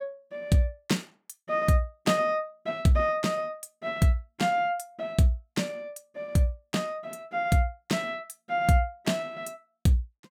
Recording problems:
none

